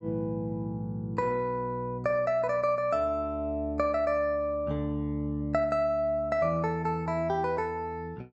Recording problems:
none

